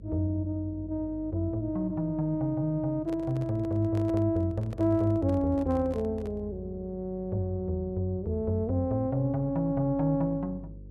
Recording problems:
electrical hum; 50 Hz, harmonics up to 550 Hz, SNR 18 dB
microphone handling noise; from 3 to 6.5 s; peak -9 dB vs average level

